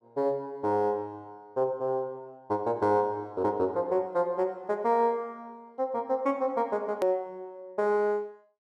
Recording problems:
edit click; at 7 s

